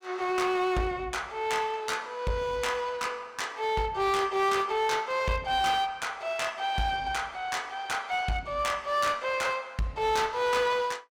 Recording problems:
distorted audio; hard clipping, uneven, signal-to-distortion ratio 10 dB

